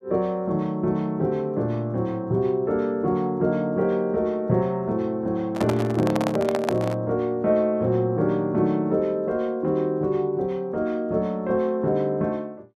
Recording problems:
microphone handling noise; from 5.5 to 7 s; peak +2 dB vs average level

